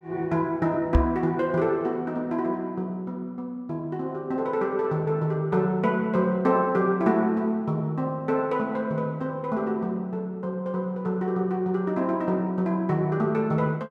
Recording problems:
knock on the microphone; at 1 s; peak +8 dB vs average level

